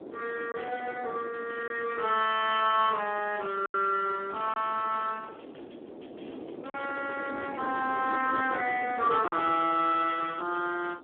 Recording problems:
phone line; 240 Hz to 3.2 kHz, Speex
wind on the microphone; below 520 Hz, SNR 14 dB
packet loss; 2% of the sound replaced, filled with silence

